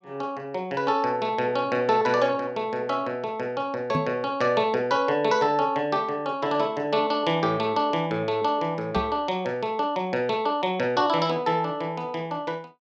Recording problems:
microphone bump; at 4 s and at 9 s; peak +1 dB vs average level

